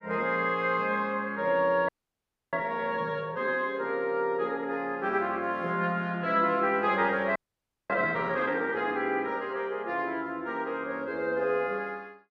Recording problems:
frozen audio; at 2 s for 0.5 s and at 7.5 s for 0.5 s

